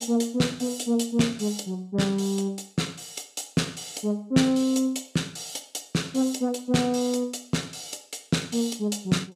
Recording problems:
none

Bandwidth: 14.5 kHz